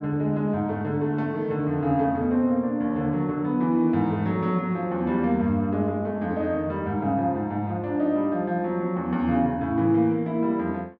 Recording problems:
none

